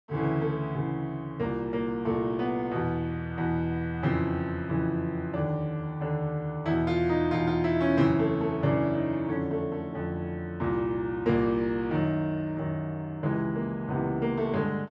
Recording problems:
none

